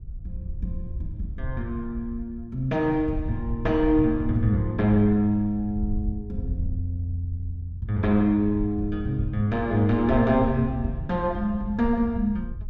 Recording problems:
rumble; below 82 Hz, SNR 11 dB

